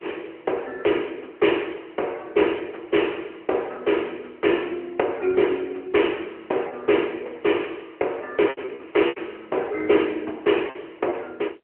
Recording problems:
telephone audio; 320 Hz to 3.1 kHz, AMR-NB
lost packets; 3% of the sound replaced, filled with repeated pitch periods

